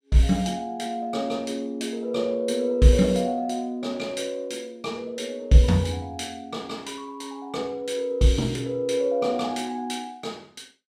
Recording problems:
none

